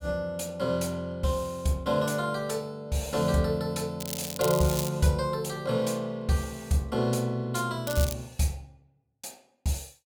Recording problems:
crackle; at 4 s and at 8 s; loose cable, SNR 7 dB

